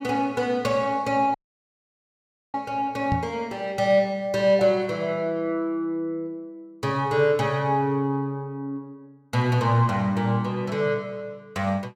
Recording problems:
dropout; at 1.5 s for 1 s
microphone thump; at 3 s; peak +1 dB vs average level

